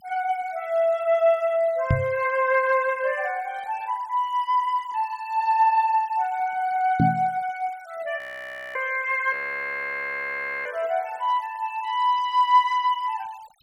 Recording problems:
denoising artefacts; signal-to-artefact ratio 26 dB
microphone bump; at 2 s and at 7 s; peak +6 dB vs average level
frozen audio; at 8 s for 0.5 s and at 9.5 s for 1.5 s

